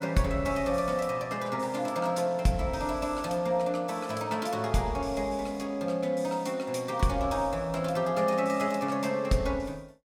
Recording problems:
none

